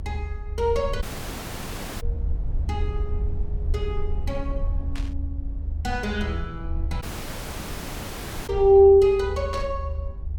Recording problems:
low-frequency rumble; below 76 Hz, SNR 9 dB
dropout; at 1 s for 1 s and at 7 s for 1.5 s
static burst; at 5 s and at 9.5 s; peak -14 dB vs average level

